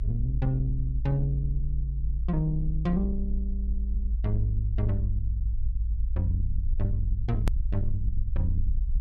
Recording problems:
distorted audio; soft clipping, signal-to-distortion ratio 12 dB
low-frequency rumble; below 56 Hz, SNR 0 dB
edit click; at 7.5 s

